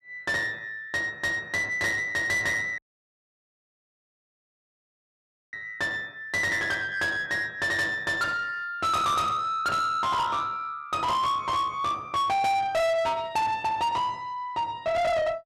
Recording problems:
distorted audio; soft clipping, signal-to-distortion ratio 6 dB
dropout; at 3 s for 3 s

